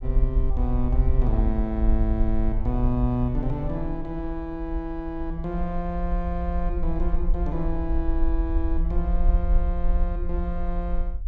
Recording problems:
rumble; below 52 Hz, SNR -2 dB

